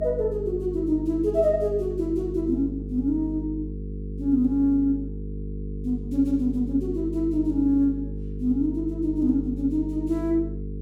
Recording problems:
hum; 50 Hz, harmonics up to 450 Hz, SNR 9 dB

